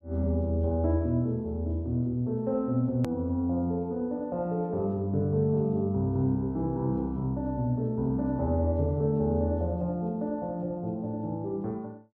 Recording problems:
edit click; at 3 s

